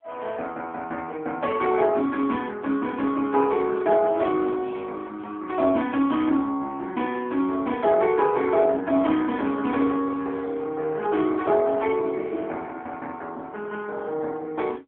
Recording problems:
telephone audio; 220 Hz to 2.8 kHz, AMR-NB

